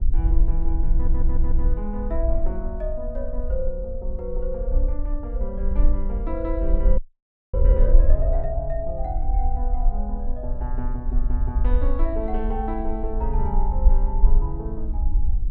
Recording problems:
low-frequency rumble; below 46 Hz, SNR -6 dB
audio stuttering; at 1 s
audio freezing; at 7 s for 0.5 s

